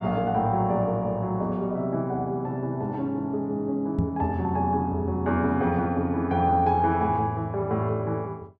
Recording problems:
knock on the microphone; at 4 s; peak +5 dB vs average level

